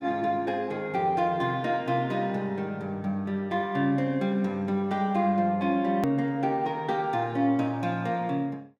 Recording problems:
click at an edit; at 6 s

